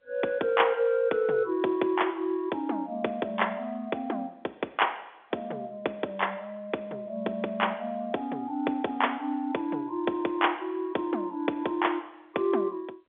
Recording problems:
phone line; 260 Hz to 3.6 kHz, G.711

